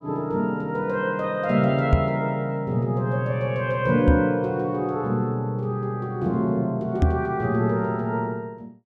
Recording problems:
microphone bump; at 2 s, at 4 s and at 7 s; peak +8 dB vs average level

